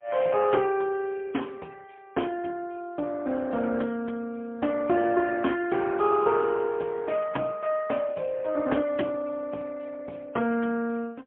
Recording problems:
phone line; 170 Hz to 3.3 kHz, AMR-NB, then MP3

